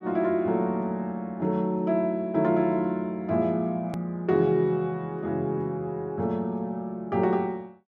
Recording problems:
hard cut with a click; at 4 s

